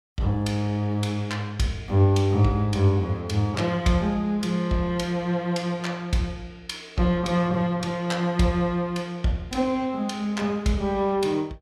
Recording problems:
none

